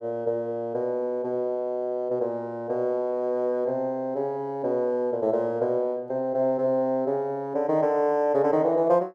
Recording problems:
none

